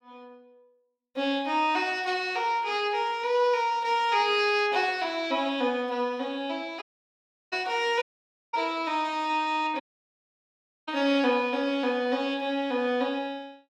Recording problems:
audio cutting out; at 7 s for 0.5 s, at 8 s for 0.5 s and at 10 s for 1 s

